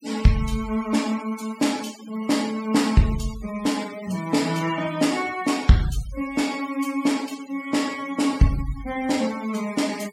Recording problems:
noise reduction artefacts; signal-to-artefact ratio 17 dB

